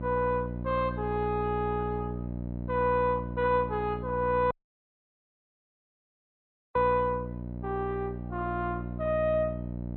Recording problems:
lossy codec; MP2, log-spectral distance 2 dB, nothing above 3.5 kHz
hum; 60 Hz, harmonics up to 660 Hz, SNR 7 dB
audio cutting out; at 4.5 s for 2 s

